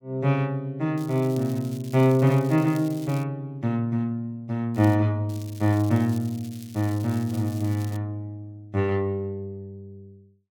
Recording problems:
crackling; from 1 to 3 s, at 4.5 s and from 5.5 to 8 s; loose cable, SNR 22 dB

